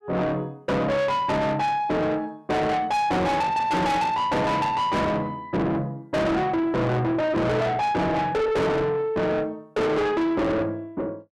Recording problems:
distortion; soft clipping, signal-to-distortion ratio 6 dB

